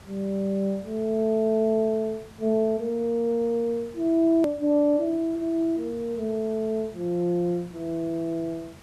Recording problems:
background hiss; slope -4 dB per octave, SNR 23 dB
edit click; at 4.5 s

